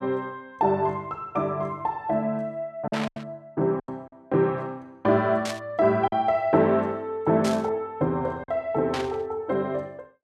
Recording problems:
lost packets; 3% of the sound replaced, filled with silence
static burst; 4 times, first at 3 s; peak -3 dB vs average level

